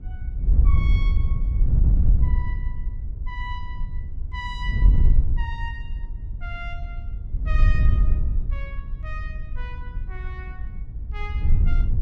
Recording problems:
wind on the microphone; below 68 Hz, SNR -13 dB

